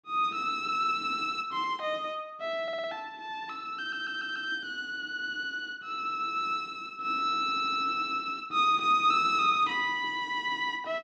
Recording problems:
audio stuttering; at 2.5 s, at 4 s and at 7.5 s

